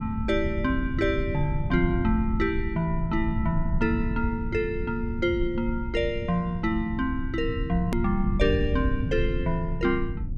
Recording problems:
rumble; below 110 Hz, SNR 4 dB
hard cut with a click; at 8 s

